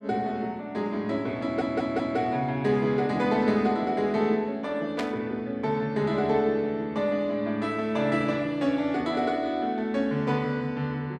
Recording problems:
stutter; at 1.5 s
burst of static; at 5 s; peak -3 dB vs average level

